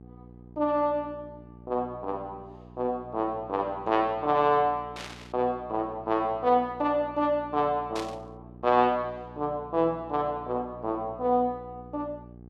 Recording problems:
mains hum; 60 Hz, harmonics up to 840 Hz, SNR 20 dB
static burst; at 5 s and at 8 s; peak -6 dB vs average level

